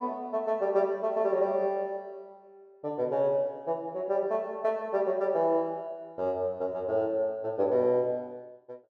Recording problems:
none

